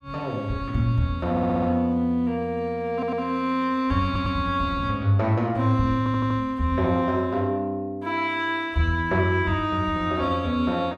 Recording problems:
audio stuttering; 4 times, first at 1.5 s

